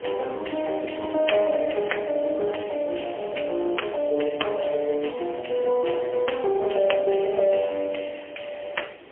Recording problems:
telephone audio; 300 Hz to 3.3 kHz, AMR-NB, then MP3
background hiss; SNR 27 dB
wind noise; below 570 Hz, SNR 20 dB

